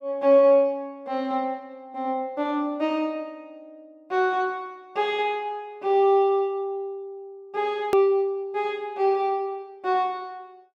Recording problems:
edit click; at 8 s

